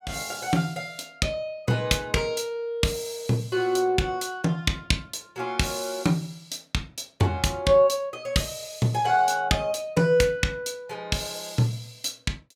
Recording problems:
none

